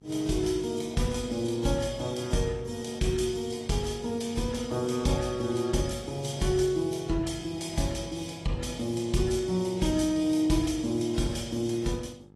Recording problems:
lossy compression; AAC, log-spectral distance 4 dB, nothing above 12 kHz
hum; 50 Hz, harmonics up to 900 Hz, SNR 25 dB

